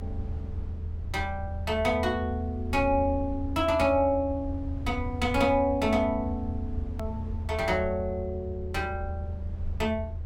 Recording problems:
low-frequency rumble; below 82 Hz, strongest tone 80 Hz, SNR 7 dB
edit click; at 7 s

